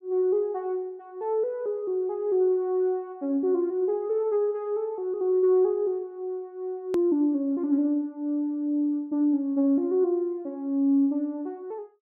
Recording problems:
hard cut with a click; at 7 s

